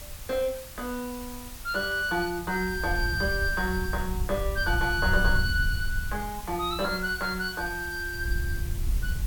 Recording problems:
background hiss; slope 0 dB per octave, SNR 13 dB
wind noise; below 78 Hz, SNR 5 dB

